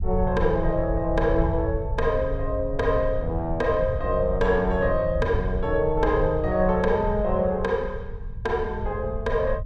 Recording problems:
rumble; below 88 Hz, SNR 7 dB

